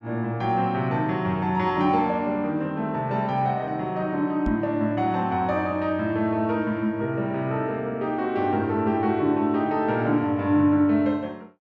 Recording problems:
knock on the microphone; at 4.5 s; peak +1 dB vs average level

